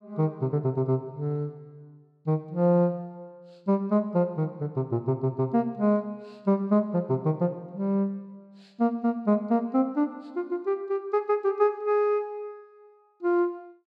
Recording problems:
none

